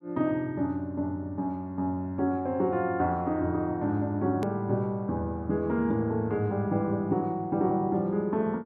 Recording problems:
click at an edit; at 4.5 s

